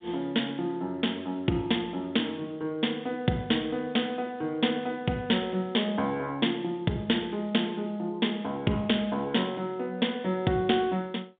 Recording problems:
telephone audio; 130 Hz to 3.7 kHz, G.711

